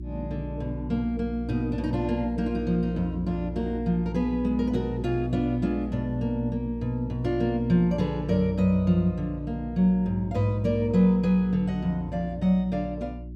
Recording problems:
electrical hum; 60 Hz, harmonics up to 360 Hz, SNR 11 dB

